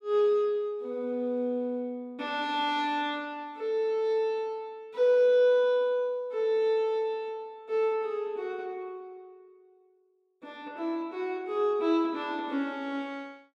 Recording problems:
none

